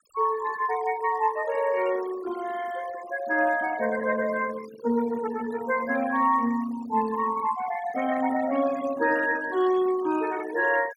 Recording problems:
noise reduction artefacts; signal-to-artefact ratio 16 dB

